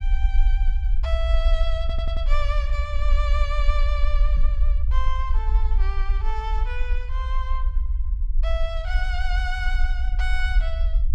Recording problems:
low-frequency rumble; below 52 Hz, SNR -8 dB
audio stuttering; at 2 s
microphone thump; at 4.5 s; peak -1 dB vs average level

